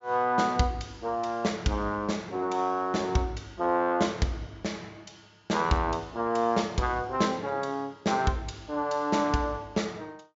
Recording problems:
treble cut off; nothing above 7.4 kHz

